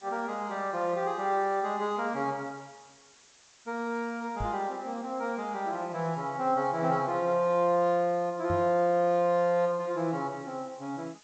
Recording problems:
low-pass filter; nothing above 8 kHz
hiss; slope +1 dB per octave, SNR 27 dB
knock on the microphone; at 4.5 s and at 8.5 s; peak -3 dB vs average level

